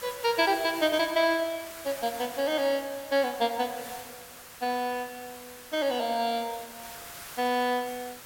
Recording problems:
hiss; SNR 14 dB

